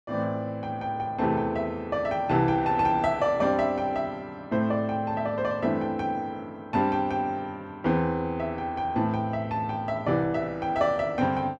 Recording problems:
none

